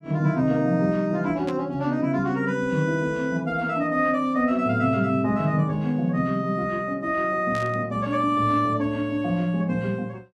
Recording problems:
burst of static; at 1.5 s and at 7.5 s; peak -11 dB vs average level

